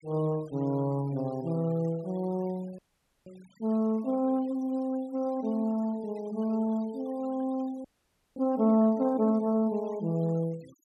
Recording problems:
noise reduction artefacts; signal-to-artefact ratio 26 dB
frozen audio; at 3 s and at 8 s for 0.5 s

